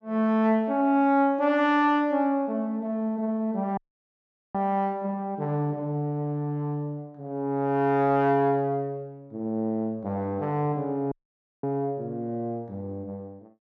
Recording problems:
audio cutting out; at 4 s for 1 s and at 11 s for 0.5 s

